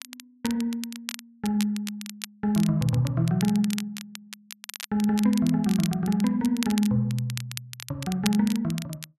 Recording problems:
crackle; vinyl, SNR 13 dB

